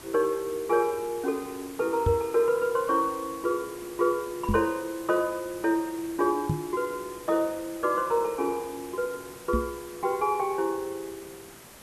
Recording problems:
background hiss; slope -3 dB per octave, SNR 17 dB
microphone thump; 4 times, first at 2 s; peak +5 dB vs average level

